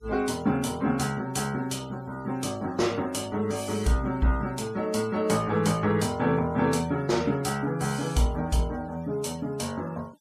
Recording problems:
denoising artefacts; signal-to-artefact ratio 23 dB

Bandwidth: 14.5 kHz